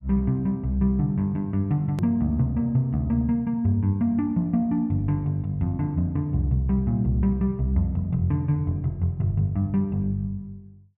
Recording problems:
hard cut with a click; at 2 s

